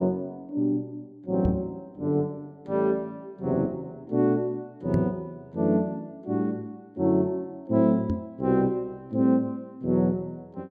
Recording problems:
microphone thump; at 1.5 s, at 5 s and at 8 s; peak +3 dB vs average level

